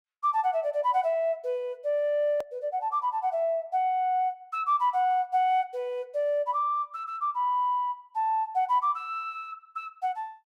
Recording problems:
click at an edit; at 2.5 s

